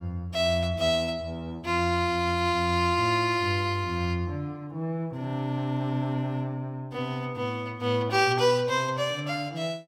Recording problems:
none

